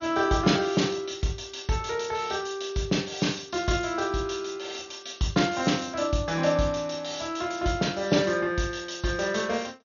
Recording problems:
lossy compression; MP2, log-spectral distance 6 dB, nothing above 6.7 kHz

